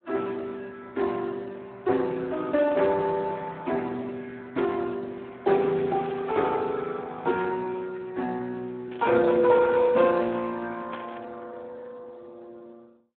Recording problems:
phone line; 170 Hz to 3.7 kHz, Speex
burst of static; 5 times, first at 2.5 s; peak -11 dB vs average level

